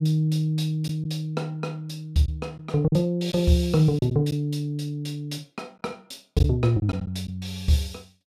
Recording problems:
lost packets; 3% of the sound replaced, filled with silence

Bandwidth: 15.5 kHz